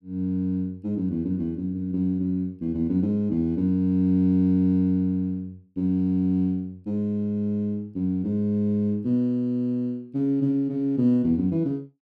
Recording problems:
none

